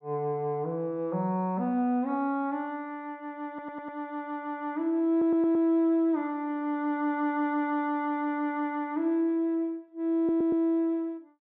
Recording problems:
audio stuttering; at 3.5 s, at 5 s and at 10 s

